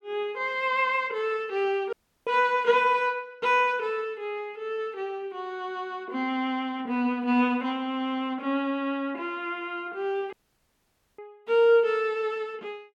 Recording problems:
dropout; at 2 s and at 10 s for 1 s

